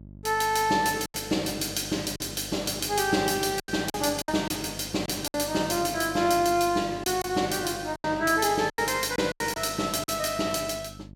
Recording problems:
hum; 50 Hz, harmonics up to 650 Hz, SNR 18 dB
packet loss; 7% of the sound replaced, filled with silence

